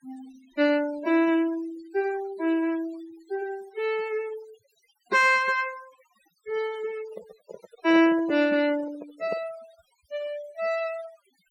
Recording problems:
noise reduction artefacts; signal-to-artefact ratio 19 dB
microphone handling noise; from 7 to 9.5 s; peak -6 dB vs average level

